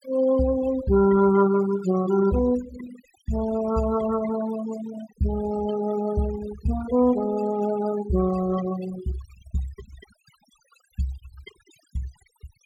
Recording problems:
noise reduction artefacts; signal-to-artefact ratio 16 dB

